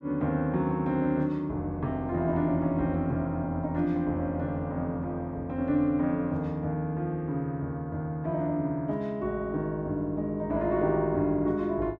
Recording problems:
none

